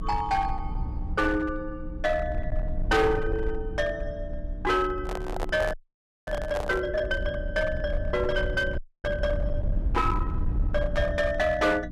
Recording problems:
distorted audio; hard clipping, uneven, signal-to-distortion ratio 10 dB
hum; 60 Hz, harmonics up to 300 Hz, SNR 15 dB
low-frequency rumble; below 78 Hz, SNR 6 dB
microphone handling noise; from 5 to 7 s; peak -1 dB vs average level
frozen audio; at 5.5 s for 0.5 s and at 9 s

